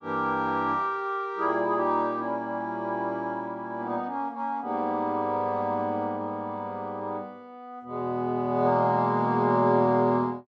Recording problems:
none

